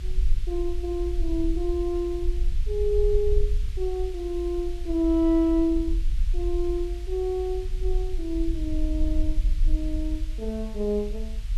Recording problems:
hiss; SNR 22 dB
low-frequency rumble; below 50 Hz, strongest tone 22 Hz, SNR 3 dB

